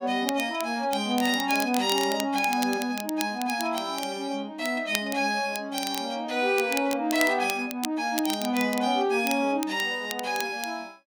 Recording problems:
crackle; vinyl, SNR 11 dB

